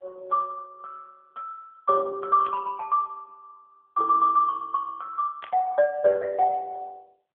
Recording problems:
telephone audio; 340 Hz to 2.7 kHz, AMR-NB
static burst; at 2.5 s and at 5.5 s; peak -11 dB vs average level

